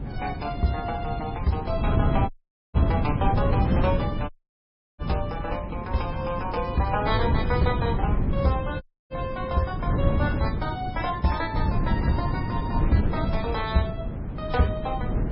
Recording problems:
codec artefacts; MP3, then MP3, log-spectral distance 2 dB, nothing above 5.3 kHz
wind on the microphone; below 210 Hz, SNR 0 dB
dropout; at 2.5 s, at 4.5 s for 0.5 s and at 9 s

